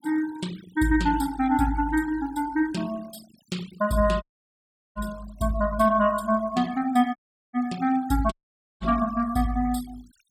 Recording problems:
noise reduction artefacts; signal-to-artefact ratio 20 dB
audio cutting out; at 4 s for 0.5 s, at 7 s and at 8.5 s

